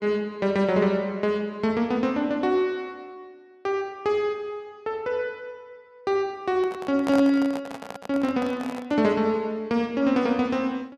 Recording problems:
handling noise; from 6.5 to 9 s; peak -2 dB vs average level

